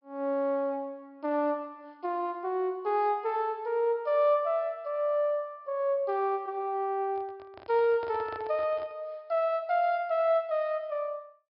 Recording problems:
low-pass filter; nothing above 5.5 kHz
microphone handling noise; from 7 to 9 s; peak -11 dB vs average level

